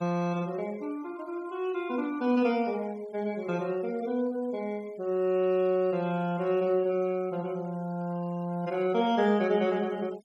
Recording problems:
denoising artefacts; signal-to-artefact ratio 26 dB

